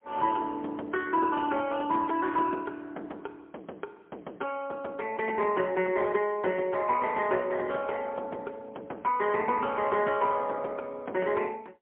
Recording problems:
phone line; 260 Hz to 3.3 kHz, AMR-NB, then MP3

